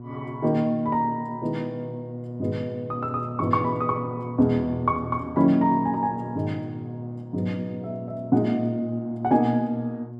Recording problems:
electrical hum; 60 Hz, harmonics up to 720 Hz, SNR 11 dB

